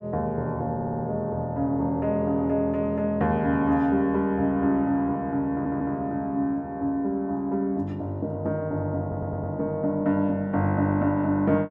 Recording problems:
stutter; at 1 s, at 5.5 s and at 9 s

